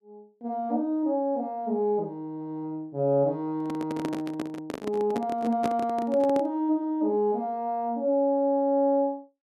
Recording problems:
handling noise; from 3.5 to 6.5 s; peak 0 dB vs average level

